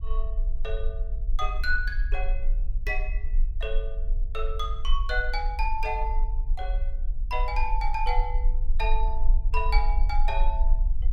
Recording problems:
rumble; below 38 Hz, strongest tone 18 Hz, SNR -3 dB

